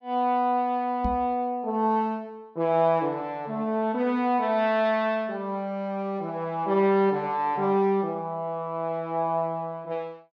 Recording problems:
knock on the microphone; at 1 s; peak -1 dB vs average level

